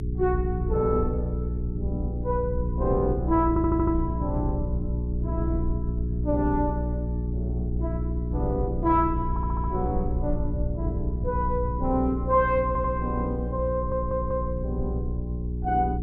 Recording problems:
hum; 60 Hz, harmonics up to 420 Hz, SNR 2 dB
rumble; below 88 Hz, SNR 8 dB
audio stuttering; 4 times, first at 3.5 s

